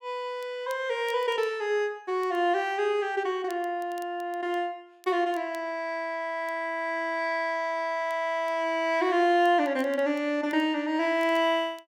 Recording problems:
crackle; vinyl, SNR 28 dB

